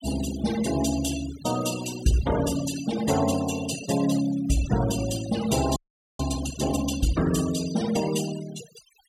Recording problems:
denoising artefacts; signal-to-artefact ratio 9 dB
audio freezing; at 6 s

